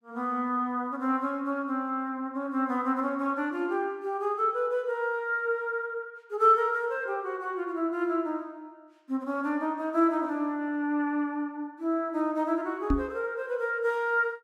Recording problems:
knock on the microphone; at 13 s; peak +6 dB vs average level

